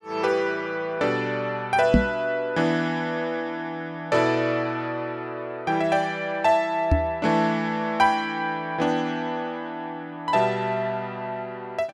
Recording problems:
microphone bump; at 2 s and at 7 s; peak +9 dB vs average level

